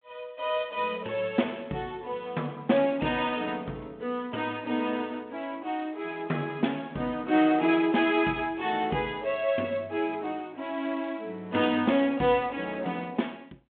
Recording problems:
telephone audio; 170 Hz to 3.6 kHz, G.726

